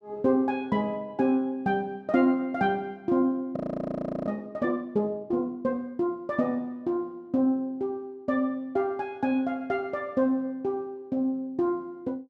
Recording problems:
frozen audio; at 3.5 s for 0.5 s

